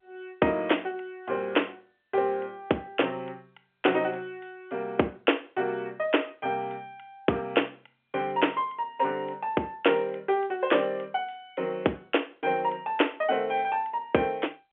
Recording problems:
telephone audio; 220 Hz to 3.4 kHz, G.711

